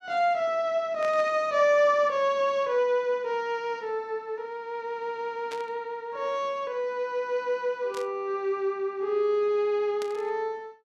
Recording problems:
burst of static; 4 times, first at 1 s; peak -9 dB vs average level

